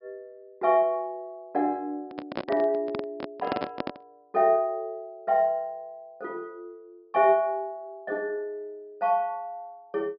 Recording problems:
treble cut off; nothing above 5.5 kHz
microphone handling noise; from 2 to 4 s; peak +2 dB vs average level

